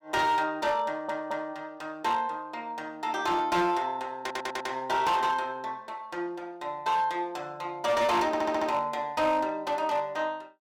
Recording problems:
distorted audio; hard clipping, signal-to-distortion ratio 12 dB
audio stuttering; at 1 s, at 4 s and at 8.5 s

